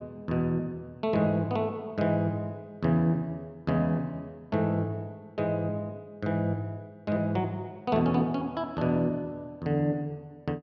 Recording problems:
none

